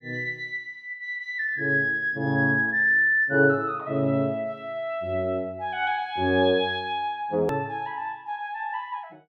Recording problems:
edit click; at 7.5 s

